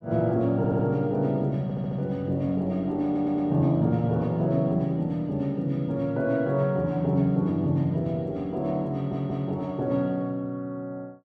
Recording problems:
audio stuttering; 4 times, first at 0.5 s

